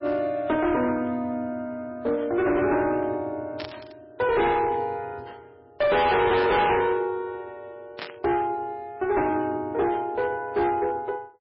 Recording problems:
codec artefacts; MP3, log-spectral distance 2 dB, nothing above 4.8 kHz
distorted audio; hard clipping, uneven, signal-to-distortion ratio 7 dB
static burst; at 3.5 s and at 8 s; peak -5 dB vs average level

